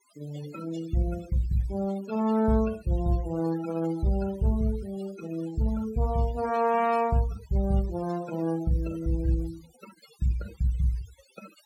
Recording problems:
noise reduction artefacts; signal-to-artefact ratio 18 dB

